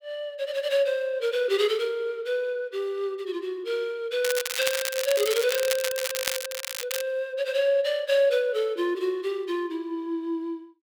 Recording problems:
crackling; from 4 to 7 s; loose cable, SNR 3 dB

